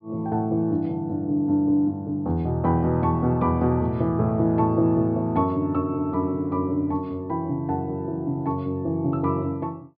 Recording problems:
treble missing; nothing above 5.5 kHz

